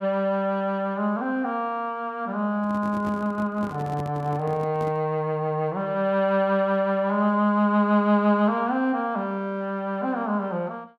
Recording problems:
microphone handling noise; from 2.5 to 5 s; peak -8 dB vs average level

